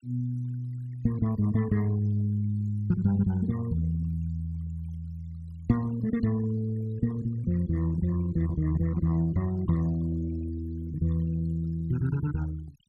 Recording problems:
denoising artefacts; signal-to-artefact ratio 23 dB

